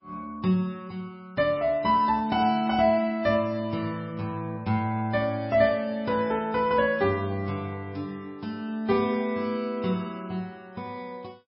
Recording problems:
lossy compression; MP3, log-spectral distance 2 dB, nothing above 5.3 kHz

